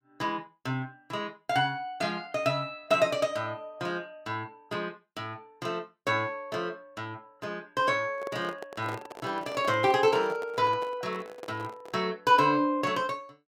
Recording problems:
handling noise; from 8 to 12 s; peak -5 dB vs average level

